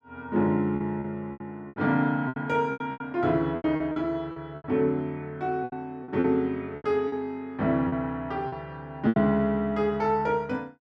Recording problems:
packet loss; 11% of the sound replaced, filled with repeated pitch periods

